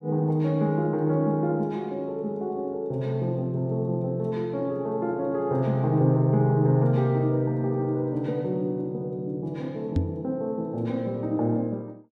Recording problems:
microphone thump; at 10 s; peak +5 dB vs average level

